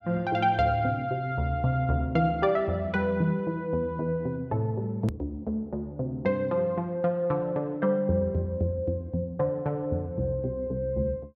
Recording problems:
edit click; at 5 s

